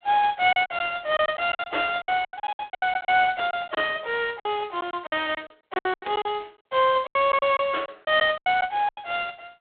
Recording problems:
telephone audio; 320 Hz to 3.6 kHz, G.726
packet loss; 15% of the sound replaced, filled with silence

